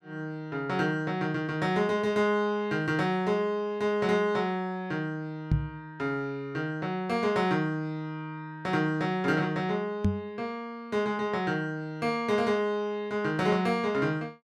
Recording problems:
microphone bump; at 5.5 s and at 10 s; peak +6 dB vs average level

